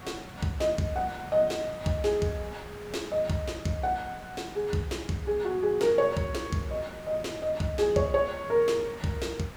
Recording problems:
background hiss; SNR 16 dB

